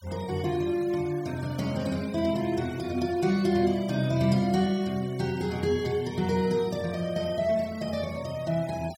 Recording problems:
denoising artefacts; signal-to-artefact ratio 20 dB

